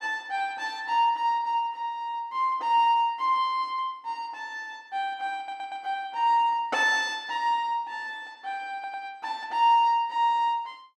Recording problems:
audio stuttering; at 5.5 s and at 8.5 s

